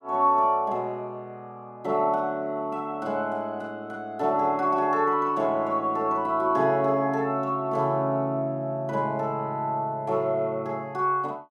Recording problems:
none

